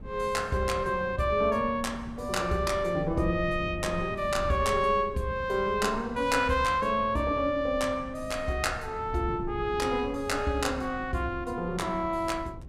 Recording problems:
wind noise; below 170 Hz, SNR 14 dB

